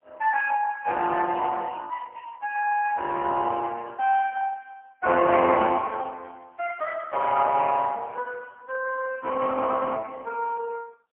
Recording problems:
phone line; 280 Hz to 3.1 kHz, AMR-NB, then MP3

